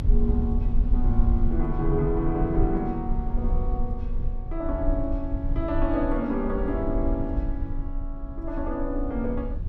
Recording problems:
low-frequency rumble; below 60 Hz, strongest tone 26 Hz, SNR 1 dB

